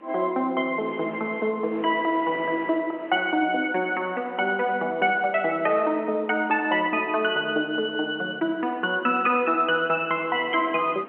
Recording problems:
phone line; 240 Hz to 3.2 kHz, G.711
wind noise; below 1.3 kHz, SNR 22 dB

